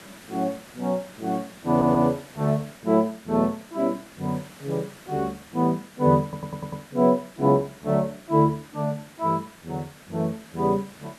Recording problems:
hiss; SNR 21 dB
audio stuttering; at 1.5 s and at 6 s

